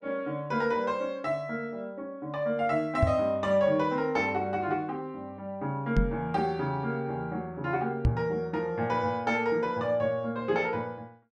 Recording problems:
knock on the microphone; at 3 s, at 6 s and at 8 s; peak +8 dB vs average level

